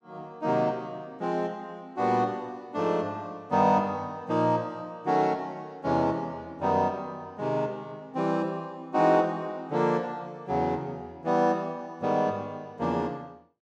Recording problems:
none

